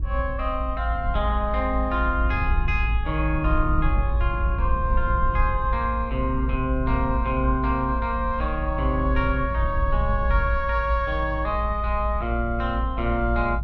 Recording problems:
low-frequency rumble; below 60 Hz, strongest tone 56 Hz, SNR 1 dB

